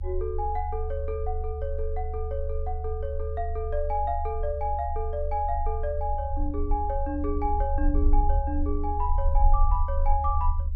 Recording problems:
low-frequency rumble; below 74 Hz, strongest tone 26 Hz, SNR 0 dB

